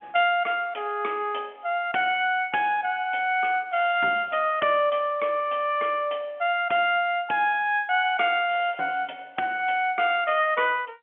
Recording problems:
telephone audio; 280 Hz to 3.3 kHz, G.711

